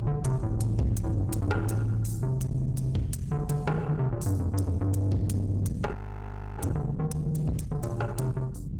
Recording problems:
codec artefacts; Opus, log-spectral distance 2 dB, nothing above 19 kHz
distortion; soft clipping, signal-to-distortion ratio 10 dB
low-frequency rumble; below 180 Hz, SNR 6 dB
audio freezing; at 6 s for 0.5 s

